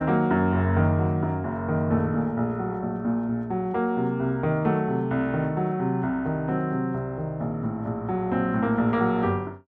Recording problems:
none

